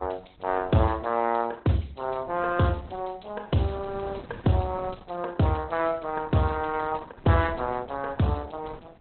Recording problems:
codec artefacts; Opus, log-spectral distance 7 dB, nothing above 4 kHz
wind noise; below 470 Hz, SNR 20 dB

